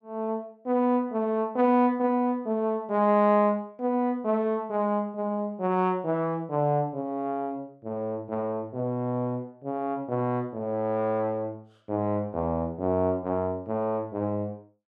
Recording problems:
none

